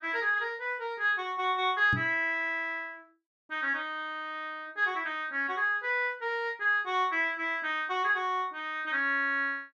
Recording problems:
knock on the microphone; at 2 s; peak 0 dB vs average level

